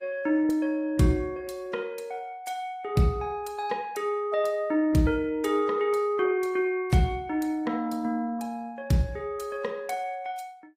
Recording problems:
lossy codec; Opus, then AAC, log-spectral distance 2 dB, nothing above 15.5 kHz

